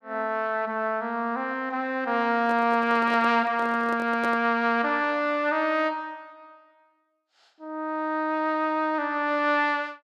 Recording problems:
handling noise; from 2.5 to 4.5 s; peak -5 dB vs average level

